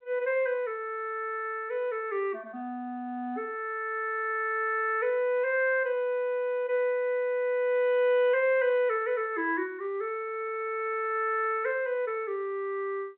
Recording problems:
phone line; 280 Hz to 3.5 kHz, G.711

